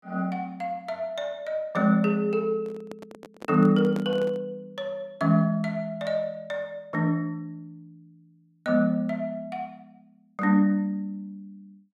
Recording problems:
handling noise; from 2.5 to 4.5 s; peak -5 dB vs average level

